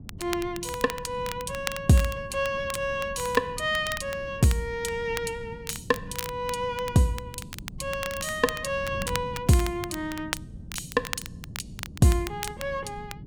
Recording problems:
wind noise; below 190 Hz, SNR 15 dB
crackling; vinyl, SNR 11 dB

